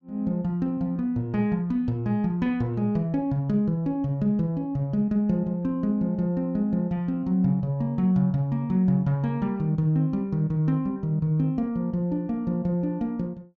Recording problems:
none

